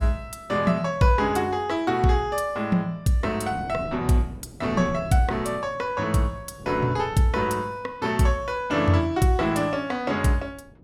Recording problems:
wind on the microphone; below 320 Hz, SNR 18 dB

